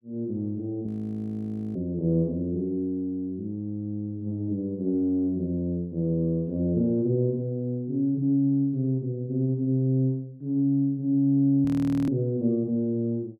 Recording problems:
audio freezing; at 1 s for 1 s and at 12 s

